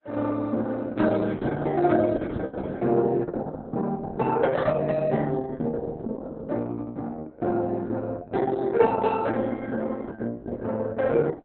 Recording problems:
lossy codec; Opus, log-spectral distance 3 dB, nothing above 4 kHz

